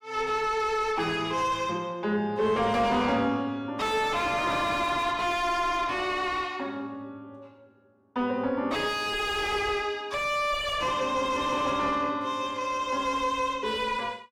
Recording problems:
distorted audio; soft clipping, signal-to-distortion ratio 6 dB

